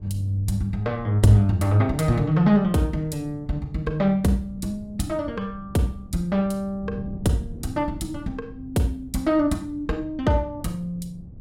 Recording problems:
wind on the microphone; below 160 Hz, SNR 17 dB

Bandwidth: 16 kHz